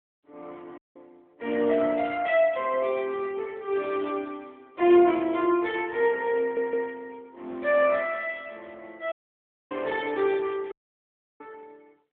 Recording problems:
telephone audio; 260 Hz to 3.5 kHz, AMR-NB
dropout; at 1 s, at 9 s for 0.5 s and at 11 s for 0.5 s
stutter; at 6.5 s

